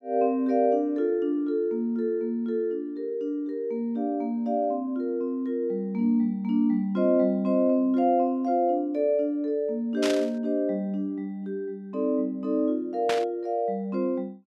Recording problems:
burst of static; at 10 s and at 13 s; peak 0 dB vs average level

